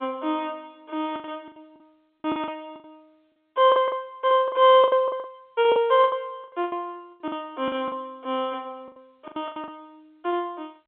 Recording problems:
telephone audio; 320 Hz to 3.6 kHz, G.711
lost packets; 15% of the sound replaced, filled with the last packet

